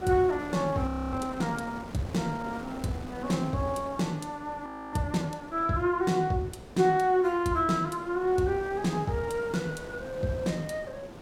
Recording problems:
wind noise; below 820 Hz, SNR 14 dB
audio freezing; at 1 s and at 4.5 s

